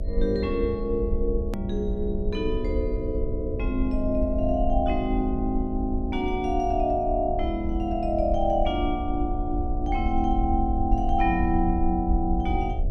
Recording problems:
electrical hum; 60 Hz, harmonics up to 660 Hz, SNR 13 dB
rumble; below 64 Hz, SNR 4 dB
edit click; at 1.5 s

